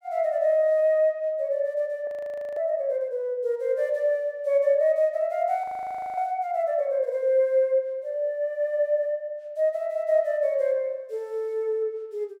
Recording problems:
audio freezing; at 2 s for 0.5 s and at 5.5 s for 0.5 s

